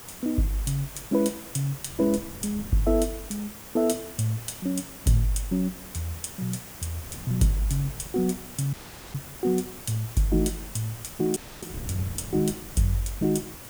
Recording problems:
background hiss; slope -3 dB per octave, SNR 13 dB
wind on the microphone; below 190 Hz, SNR 19 dB
audio cutting out; at 8.5 s and at 11 s

